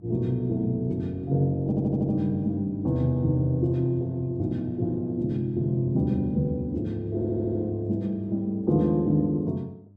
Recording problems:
hum; 50 Hz, harmonics up to 600 Hz, SNR 24 dB
audio stuttering; at 1.5 s and at 7 s

